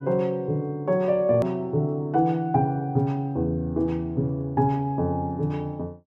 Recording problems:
edit click; at 1.5 s

